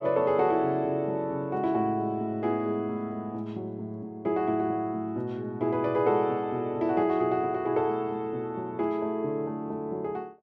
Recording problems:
none

